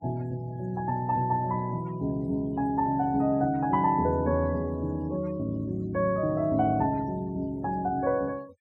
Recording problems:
noise reduction artefacts; signal-to-artefact ratio 28 dB

